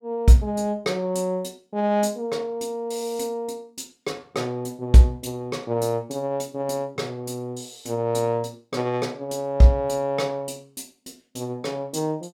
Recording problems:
none

